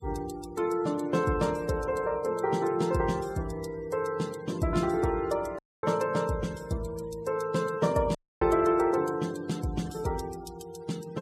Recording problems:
denoising artefacts; signal-to-artefact ratio 21 dB
dropout; at 5.5 s and at 8 s

